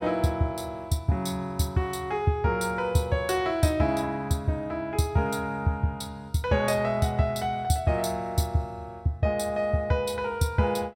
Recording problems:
none

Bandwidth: 16 kHz